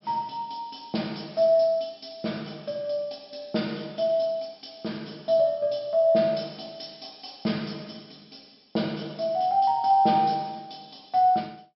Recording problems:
treble cut off; nothing above 5.5 kHz

